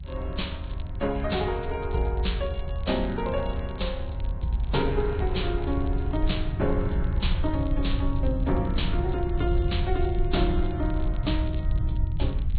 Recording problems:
treble cut off; nothing above 4.2 kHz
lossy codec; Vorbis, log-spectral distance 2 dB
low-frequency rumble; below 82 Hz, SNR 1 dB
wind on the microphone; below 130 Hz, SNR 15 dB
crackling; vinyl, SNR 25 dB

